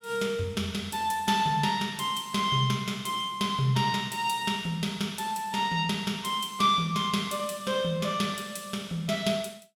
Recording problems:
none

